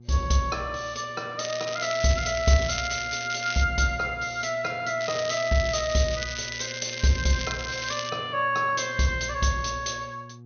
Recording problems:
treble cut off; nothing above 6.4 kHz
electrical hum; 60 Hz, harmonics up to 480 Hz, SNR 20 dB
crackle; from 1.5 to 3.5 s and from 5 to 8 s; loose cable, SNR 9 dB

